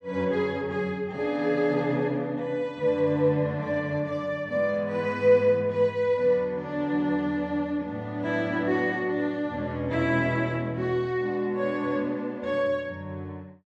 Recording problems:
none

